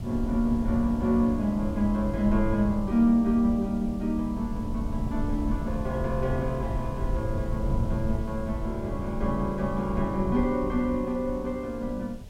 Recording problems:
hiss; SNR 28 dB
wind on the microphone; below 110 Hz, SNR 7 dB

